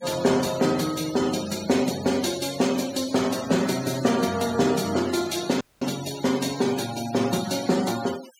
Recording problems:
denoising artefacts; signal-to-artefact ratio 14 dB
dropout; at 5.5 s

